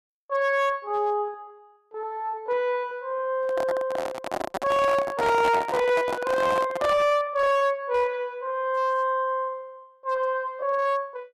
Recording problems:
distorted audio; hard clipping, signal-to-distortion ratio 12 dB
lost packets; 12% of the sound replaced, filled with repeated pitch periods
handling noise; from 3.5 to 7 s; peak 0 dB vs average level

